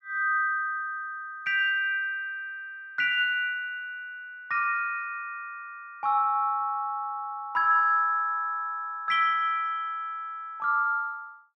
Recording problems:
none

